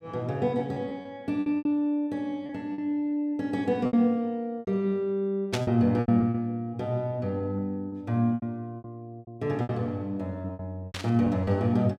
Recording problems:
lost packets; 11% of the sound replaced, filled with repeated pitch periods
burst of static; at 5.5 s and at 11 s; peak +1 dB vs average level

